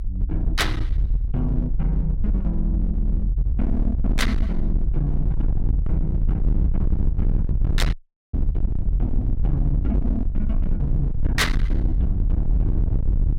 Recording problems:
distortion; hard clipping, signal-to-distortion ratio 6 dB
low-frequency rumble; below 68 Hz, SNR -3 dB
audio cutting out; at 8 s

